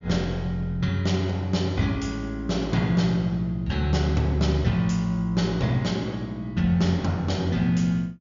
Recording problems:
low-pass filter; nothing above 7.1 kHz

